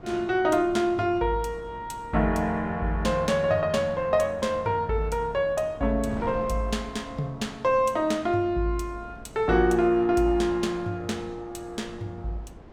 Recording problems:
wind on the microphone; below 450 Hz, SNR 19 dB

